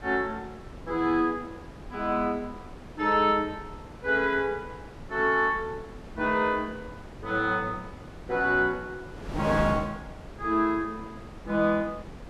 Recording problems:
wind on the microphone; below 600 Hz, SNR 15 dB

